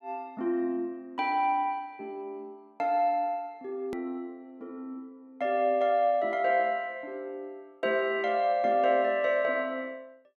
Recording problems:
click at an edit; at 4 s

